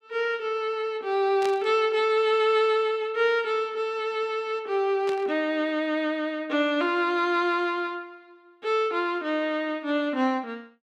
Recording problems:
static burst; at 1.5 s and at 5 s; peak -7 dB vs average level

